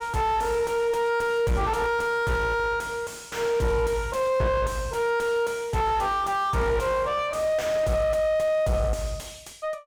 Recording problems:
distortion; soft clipping, signal-to-distortion ratio 6 dB

